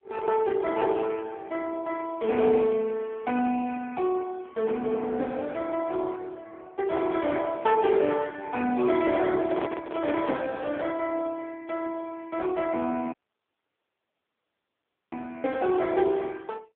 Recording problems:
phone line; 170 Hz to 2.7 kHz, AMR-NB
microphone handling noise; from 9.5 to 11 s; peak -2 dB vs average level
dropout; at 13 s for 2 s

